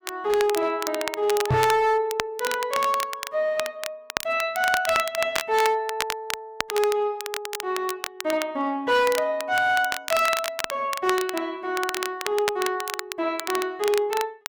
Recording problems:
distortion; hard clipping, signal-to-distortion ratio 12 dB
crackling; vinyl, SNR 7 dB
knock on the microphone; at 1.5 s; peak +5 dB vs average level

